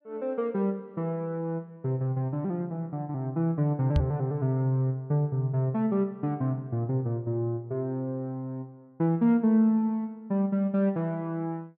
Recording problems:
microphone bump; at 4 s; peak +6 dB vs average level

